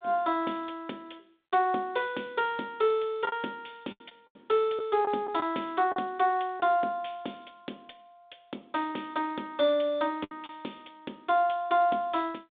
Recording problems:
phone line; 220 Hz to 3.6 kHz, G.726
lost packets; 4% of the sound replaced, filled with the last packet

